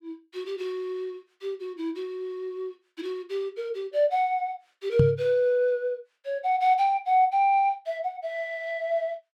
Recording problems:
knock on the microphone; at 5 s; peak +8 dB vs average level

